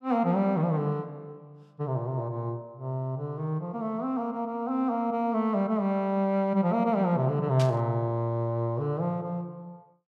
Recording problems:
burst of static; at 7.5 s; peak -5 dB vs average level

